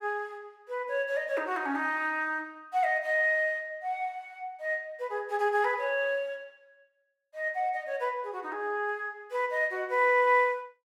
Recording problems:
none

